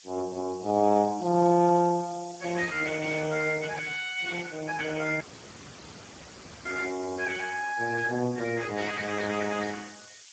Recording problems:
lossy codec; Speex, log-spectral distance 13 dB
background hiss; slope +7 dB per octave, SNR 20 dB
dropout; at 5 s for 1.5 s

